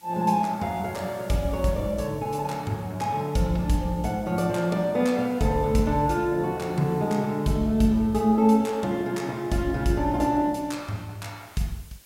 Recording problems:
hiss; slope 0 dB per octave, SNR 27 dB

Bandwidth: 16 kHz